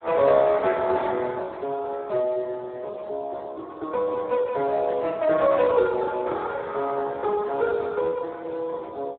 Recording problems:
telephone audio; 300 Hz to 2 kHz, Speex

